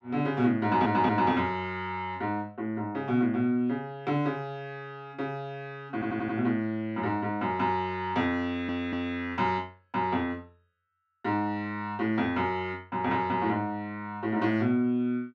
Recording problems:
audio stuttering; at 0.5 s, at 6 s and at 8.5 s

